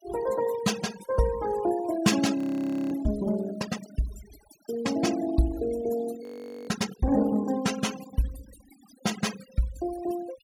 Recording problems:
denoising artefacts; signal-to-artefact ratio 13 dB
frozen audio; at 2.5 s for 0.5 s and at 6 s

